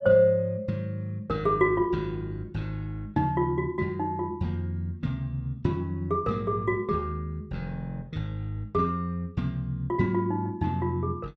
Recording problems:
none

